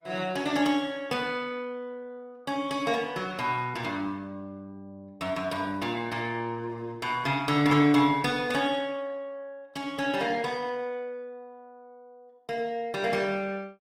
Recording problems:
codec artefacts; Opus, log-spectral distance 2 dB, nothing above 19.5 kHz

